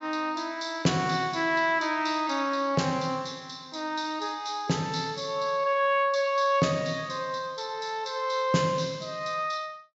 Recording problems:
treble cut off; nothing above 8 kHz

